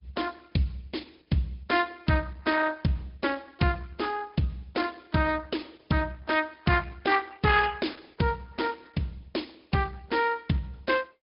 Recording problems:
treble cut off; nothing above 5.2 kHz
lossy compression; Opus, log-spectral distance 4 dB

